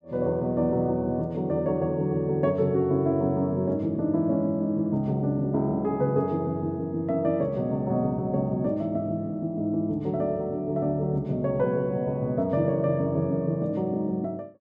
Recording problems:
none

